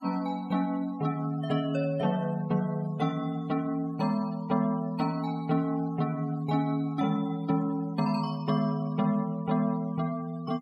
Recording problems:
noise reduction artefacts; signal-to-artefact ratio 24 dB

